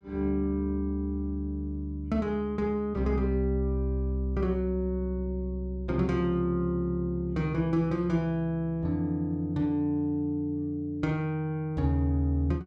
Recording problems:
none

